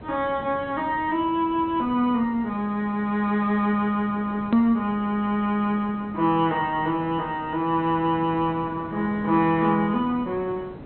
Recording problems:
treble missing; nothing above 4.1 kHz
hiss; SNR 18 dB
click at an edit; at 4.5 s

